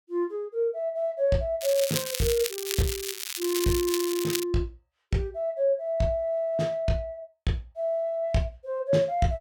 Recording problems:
crackle; from 1.5 to 4.5 s; loose cable, SNR 4 dB

